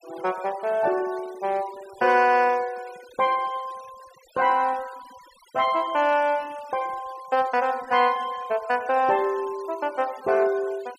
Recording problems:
denoising artefacts; signal-to-artefact ratio 23 dB

